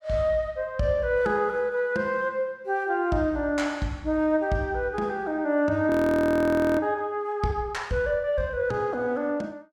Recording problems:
frozen audio; at 6 s for 1 s

